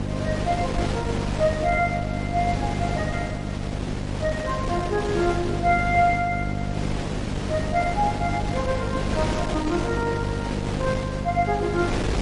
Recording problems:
codec artefacts; MP3, log-spectral distance 2 dB
electrical hum; 50 Hz, harmonics up to 800 Hz, SNR 4 dB
wind on the microphone; below 820 Hz, SNR 5 dB

